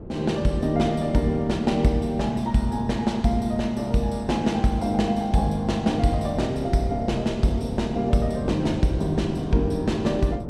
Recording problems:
wind on the microphone; below 360 Hz, SNR 13 dB

